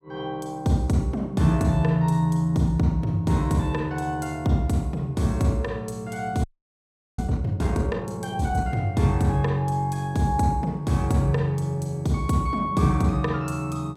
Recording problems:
audio freezing; at 6.5 s for 0.5 s

